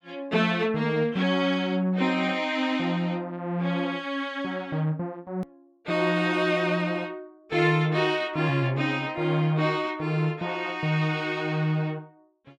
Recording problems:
edit click; at 5.5 s

